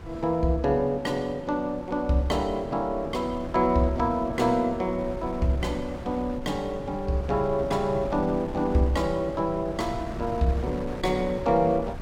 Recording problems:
wind on the microphone; below 290 Hz, SNR 13 dB

